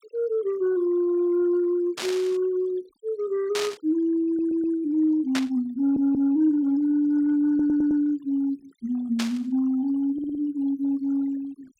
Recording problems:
denoising artefacts; signal-to-artefact ratio 27 dB
static burst; 4 times, first at 2 s; peak -1 dB vs average level
audio stuttering; 4 times, first at 4.5 s

